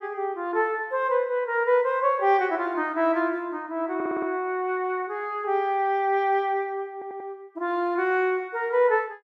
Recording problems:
stutter; at 4 s and at 7 s

